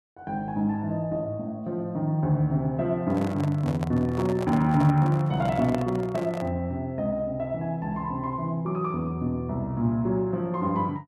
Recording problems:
microphone handling noise; from 3 to 6.5 s; peak -2 dB vs average level

